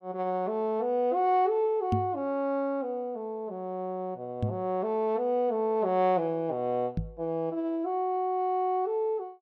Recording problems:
microphone bump; at 2 s, at 4.5 s and at 7 s; peak +4 dB vs average level

